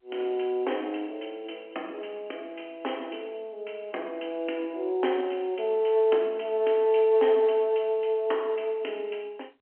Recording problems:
telephone audio; 260 Hz to 3.3 kHz, G.711

